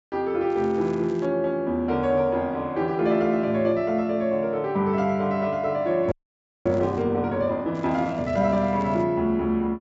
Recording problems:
low-pass filter; nothing above 8 kHz
crackle; at 0.5 s, at 6 s and from 7.5 to 9 s; loose cable, SNR 29 dB
frozen audio; at 6 s for 0.5 s

